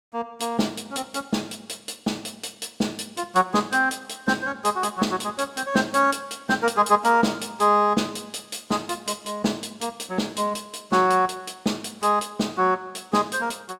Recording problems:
none

